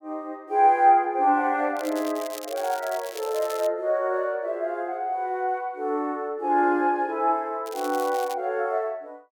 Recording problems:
crackle; from 2 to 3.5 s and at 7.5 s; loose cable, SNR 16 dB

